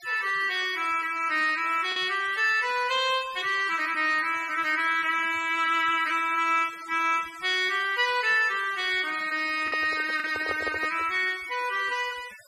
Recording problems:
noise reduction artefacts; signal-to-artefact ratio 18 dB
lost packets; 1% of the sound replaced, filled with the last packet
microphone handling noise; from 9.5 to 11 s; peak -6 dB vs average level

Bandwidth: 14 kHz